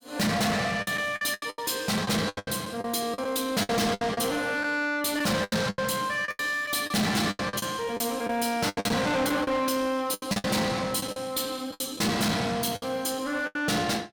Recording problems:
distorted audio; soft clipping, signal-to-distortion ratio 6 dB
packet loss; 14% of the sound replaced, filled with the last packet

